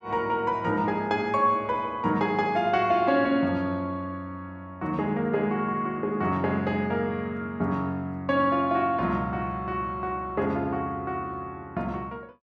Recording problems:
none

